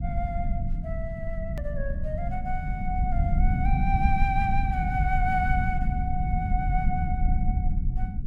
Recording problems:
low-frequency rumble; below 96 Hz, SNR -3 dB
edit click; at 1.5 s

